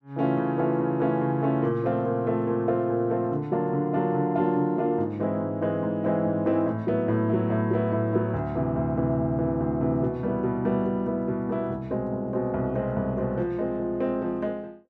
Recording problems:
none

